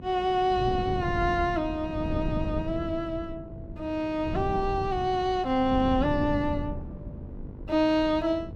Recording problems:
hum; 50 Hz, harmonics up to 1.5 kHz, SNR 24 dB
wind on the microphone; below 200 Hz, SNR 9 dB

